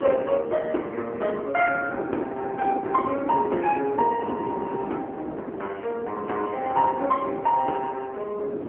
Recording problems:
telephone audio; 280 Hz to 2.5 kHz, AMR-NB
wind noise; below 510 Hz, SNR 8 dB

